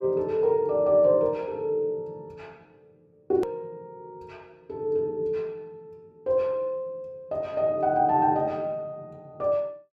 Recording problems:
edit click; at 3.5 s

